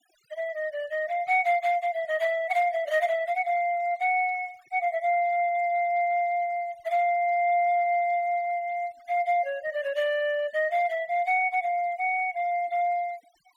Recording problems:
denoising artefacts; signal-to-artefact ratio 26 dB

